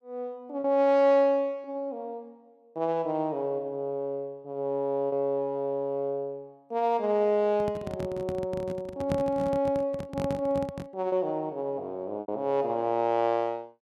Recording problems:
lost packets; 1.5% of the sound replaced, filled with repeated pitch periods
handling noise; from 7.5 to 11 s; peak +1 dB vs average level

